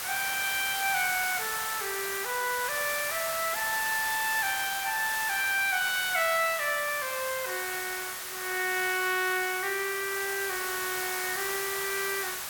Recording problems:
background hiss; SNR 3 dB

